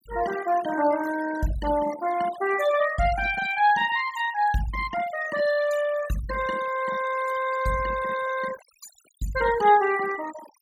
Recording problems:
noise reduction artefacts; signal-to-artefact ratio 14 dB

